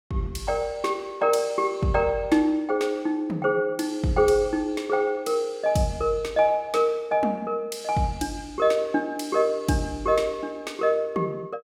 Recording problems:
none

